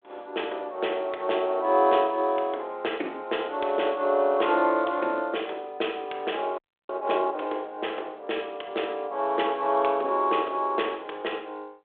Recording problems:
phone line; 300 Hz to 3.5 kHz, G.726
audio freezing; at 6.5 s

